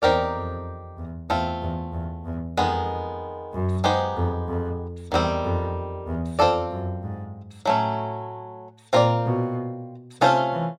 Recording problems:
none

